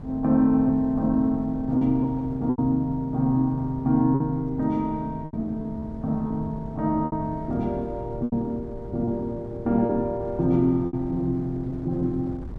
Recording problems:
wind noise; below 220 Hz, SNR 15 dB
packet loss; 5% of the sound replaced, filled with repeated pitch periods

